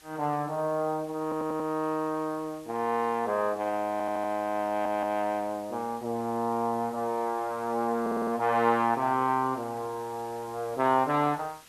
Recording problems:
background hiss; slope 0 dB per octave, SNR 23 dB
stutter; 4 times, first at 1 s

